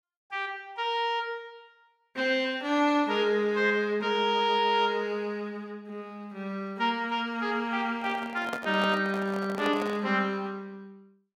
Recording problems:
handling noise; from 8 to 10 s; peak -2 dB vs average level

